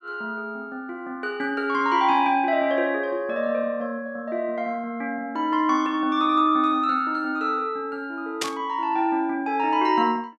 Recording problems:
burst of static; at 8.5 s; peak +2 dB vs average level

